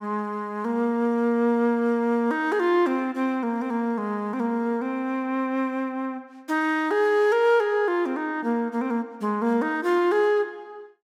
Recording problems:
none

